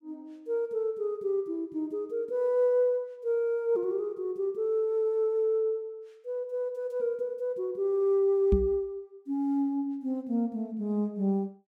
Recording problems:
microphone thump; at 8.5 s; peak +7 dB vs average level

